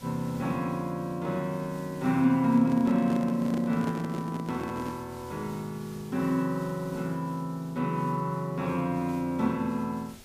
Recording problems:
hiss; SNR 23 dB
microphone handling noise; from 2.5 to 5 s; peak -3 dB vs average level

